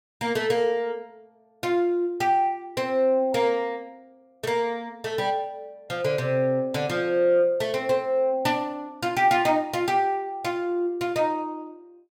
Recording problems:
none

